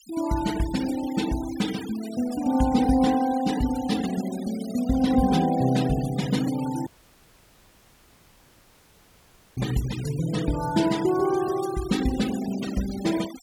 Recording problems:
noise reduction artefacts; signal-to-artefact ratio 14 dB
dropout; at 7 s for 2.5 s

